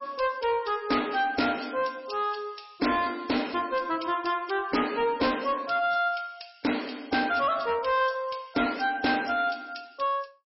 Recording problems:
lossy codec; MP3, log-spectral distance 8 dB, nothing above 5.5 kHz
distorted audio; soft clipping, signal-to-distortion ratio 10 dB

